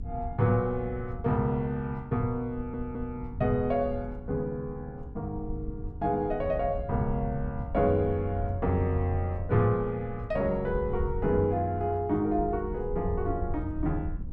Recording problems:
hum; 60 Hz, harmonics up to 300 Hz, SNR 21 dB
wind on the microphone; below 86 Hz, SNR 10 dB
stutter; at 2.5 s

